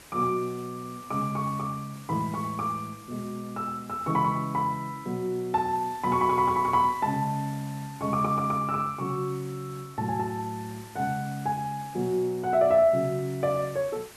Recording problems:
hiss; slope -2 dB per octave, SNR 20 dB

